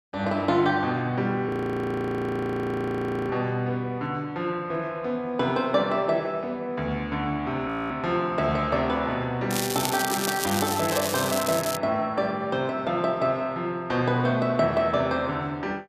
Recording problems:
audio freezing; at 1.5 s for 2 s and at 7.5 s
crackling; from 9.5 to 12 s; loose cable, SNR 4 dB

